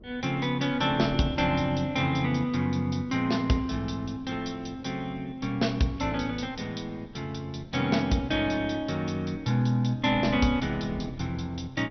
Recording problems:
lossy codec; MP2, log-spectral distance 3 dB, nothing above 5.8 kHz
wind noise; below 270 Hz, SNR 18 dB

